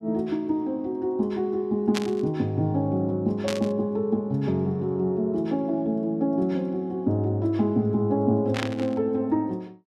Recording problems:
static burst; at 2 s, at 3.5 s and at 8.5 s; peak 0 dB vs average level

